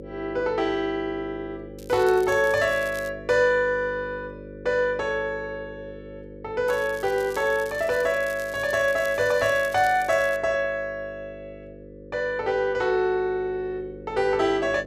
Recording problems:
hum; 50 Hz, harmonics up to 550 Hz, SNR 17 dB
crackle; from 2 to 3 s and from 6.5 to 10 s; loose cable, SNR 20 dB

